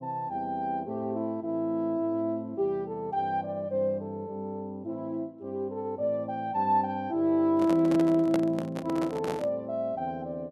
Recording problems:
microphone handling noise; from 7.5 to 9.5 s; peak +2 dB vs average level

